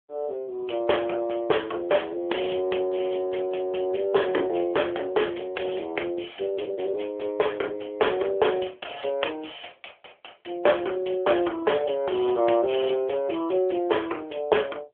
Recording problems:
telephone audio; 300 Hz to 3.4 kHz, AMR-NB

